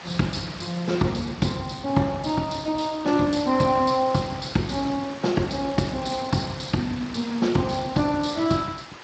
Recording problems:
lossy compression; Speex, log-spectral distance 9 dB, nothing above 7.8 kHz
hiss; SNR 15 dB

